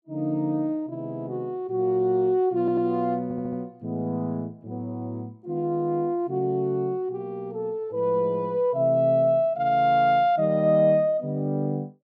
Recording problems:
stutter; at 2.5 s and at 3 s

